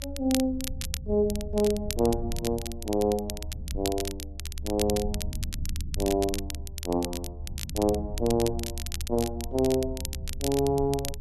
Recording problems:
low-frequency rumble; below 76 Hz, SNR 9 dB
crackle; vinyl, SNR 9 dB

